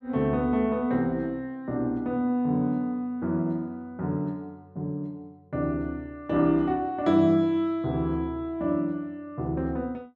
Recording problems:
none

